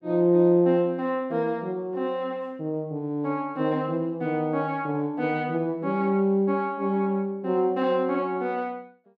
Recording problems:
none

